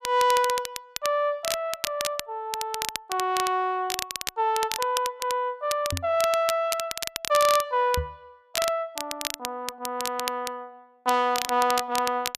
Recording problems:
crackle; vinyl, SNR 6 dB
knock on the microphone; at 6 s and at 8 s; peak 0 dB vs average level

